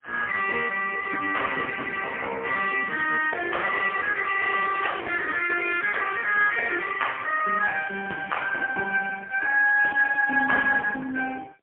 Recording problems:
telephone audio; 300 Hz to 3.3 kHz, AMR-NB, then MP3

